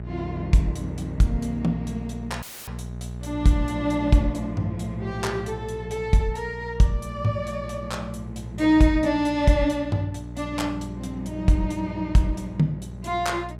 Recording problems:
mains hum; 60 Hz, harmonics up to 840 Hz, SNR 11 dB
dropout; at 2.5 s; filled with static

